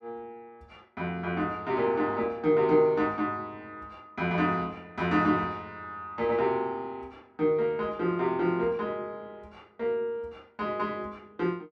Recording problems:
none

